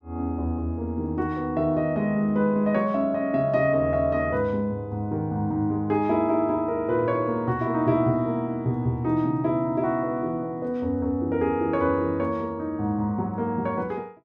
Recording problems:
none

